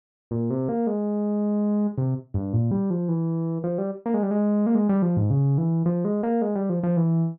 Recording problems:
none

